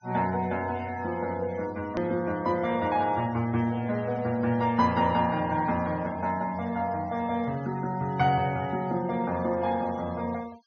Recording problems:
treble cut off; nothing above 6.3 kHz
denoising artefacts; signal-to-artefact ratio 22 dB
hard cut with a click; at 2 s

